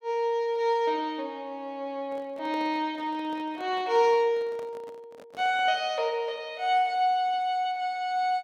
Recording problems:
microphone handling noise; from 2 to 6 s; peak -10 dB vs average level

